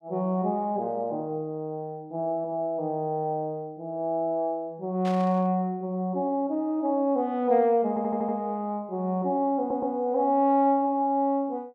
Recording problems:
burst of static; at 5 s; peak -10 dB vs average level
audio stuttering; at 8 s and at 9.5 s

